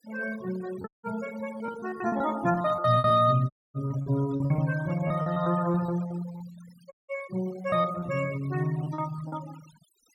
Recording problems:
noise reduction artefacts; signal-to-artefact ratio 18 dB
packet loss; 11% of the sound replaced, filled with repeated pitch periods
dropout; at 1 s, at 3.5 s and at 7 s

